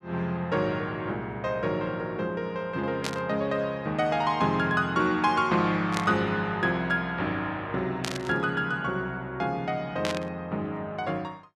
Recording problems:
static burst; 4 times, first at 3 s; peak +1 dB vs average level

